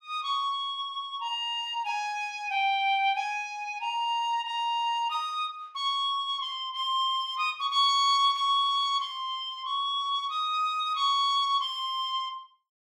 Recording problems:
none

